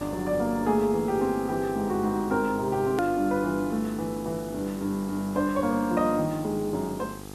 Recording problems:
hum; 50 Hz, harmonics up to 1.8 kHz, SNR 14 dB
background hiss; slope +3 dB per octave, SNR 20 dB
edit click; at 3 s

